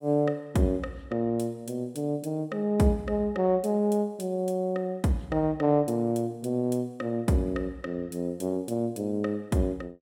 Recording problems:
none

